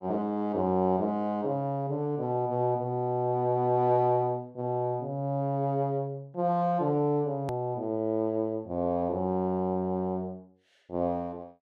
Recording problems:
edit click; at 7.5 s

